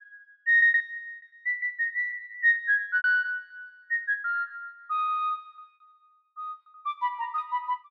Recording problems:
lost packets; 12% of the sound replaced, filled with repeated pitch periods

